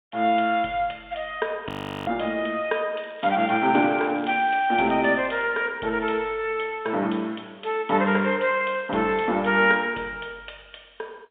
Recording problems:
telephone audio; 240 Hz to 3.7 kHz, G.711
audio freezing; at 1.5 s
crackling; from 3 to 5.5 s; loose cable, SNR 25 dB

